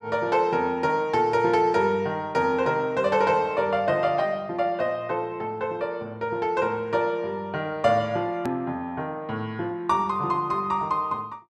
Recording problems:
edit click; at 8.5 s

